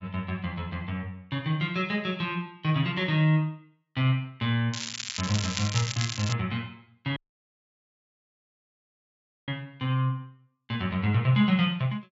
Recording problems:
treble cut off; nothing above 7.4 kHz
crackle; from 4.5 to 6.5 s; loose cable, SNR 5 dB
dropout; at 7 s for 2.5 s

